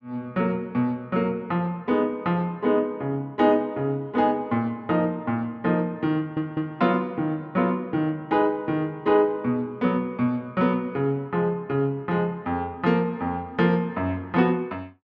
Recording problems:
audio stuttering; at 6 s

